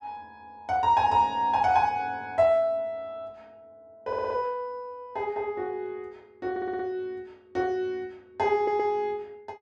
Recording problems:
audio stuttering; at 4 s, at 6.5 s and at 8.5 s

